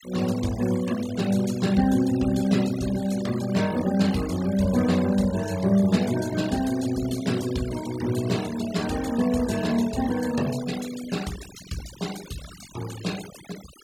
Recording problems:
noise reduction artefacts; signal-to-artefact ratio 15 dB

